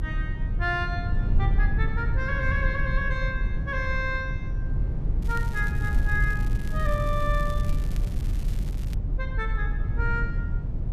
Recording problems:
rumble; below 94 Hz, SNR -3 dB
crackle; from 5 to 9 s; loose cable, SNR 17 dB

